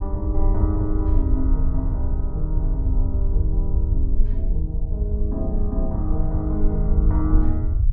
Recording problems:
rumble; below 66 Hz, SNR -6 dB

